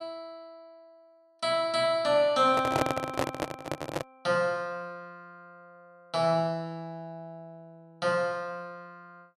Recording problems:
handling noise; from 2.5 to 4 s; peak +4 dB vs average level

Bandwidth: 13.5 kHz